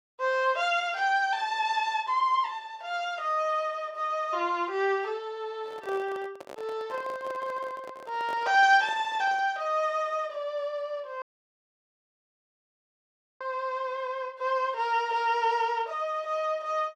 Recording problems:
handling noise; from 5.5 to 9.5 s; peak -10 dB vs average level
dropout; at 11 s for 2 s

